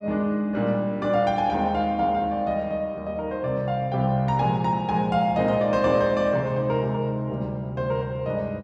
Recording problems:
none

